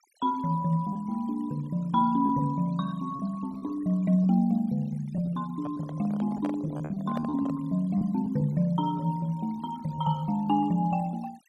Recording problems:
noise reduction artefacts; signal-to-artefact ratio 25 dB
packet loss; 5% of the sound replaced, filled with repeated pitch periods
handling noise; from 5.5 to 7.5 s; peak -5 dB vs average level

